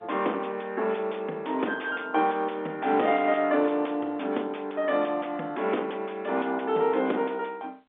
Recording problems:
telephone audio; 220 Hz to 3.9 kHz, G.711
distorted audio; soft clipping, signal-to-distortion ratio 12 dB

